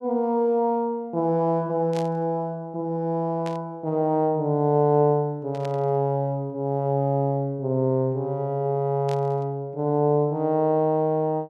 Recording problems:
burst of static; 4 times, first at 2 s; peak -12 dB vs average level

